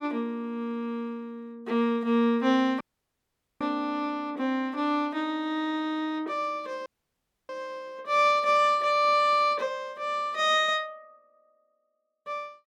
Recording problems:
audio cutting out; at 3 s for 1 s and at 7 s for 0.5 s

